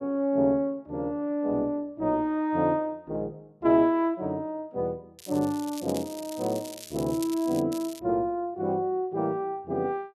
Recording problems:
crackle; from 5 to 7.5 s and at 7.5 s; loose cable, SNR 15 dB

